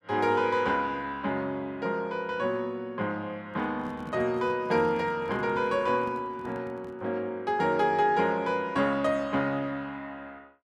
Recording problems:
microphone handling noise; from 3.5 to 7 s; peak -11 dB vs average level

